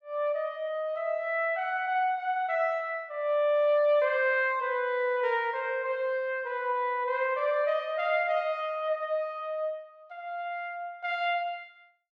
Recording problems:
none

